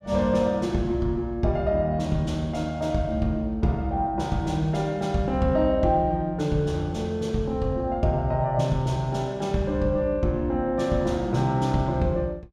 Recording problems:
none

